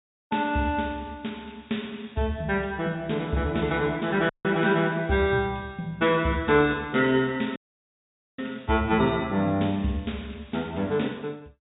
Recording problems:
treble cut off; nothing above 4 kHz
dropout; at 4.5 s and at 7.5 s for 1 s

